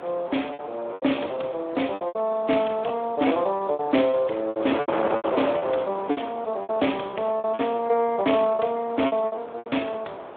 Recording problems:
phone line; 240 Hz to 3.5 kHz, Speex
wind noise; below 1.1 kHz, SNR 10 dB
packet loss; 14% of the sound replaced, filled with repeated pitch periods

